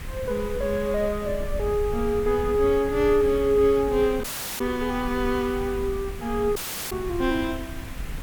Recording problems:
hiss; SNR 18 dB
wind noise; below 90 Hz, SNR 12 dB
audio cutting out; at 4 s and at 6.5 s

